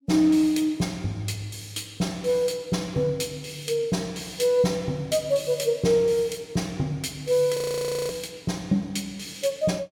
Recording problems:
frozen audio; at 7.5 s for 0.5 s

